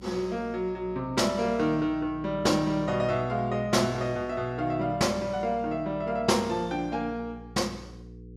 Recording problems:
hum; 60 Hz, harmonics up to 480 Hz, SNR 18 dB

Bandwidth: 15.5 kHz